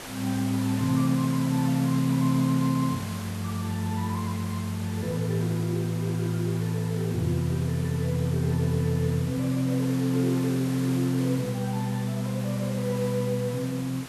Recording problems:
background hiss; slope -3 dB per octave, SNR 14 dB

